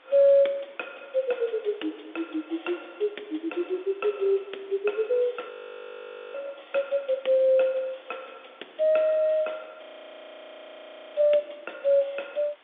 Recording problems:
phone line; 260 Hz to 3.6 kHz, G.711
hiss; SNR 29 dB
audio freezing; at 5.5 s for 1 s and at 10 s for 1.5 s

